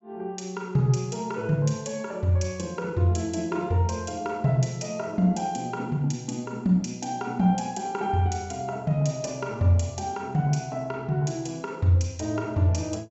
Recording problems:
treble missing; nothing above 7.6 kHz

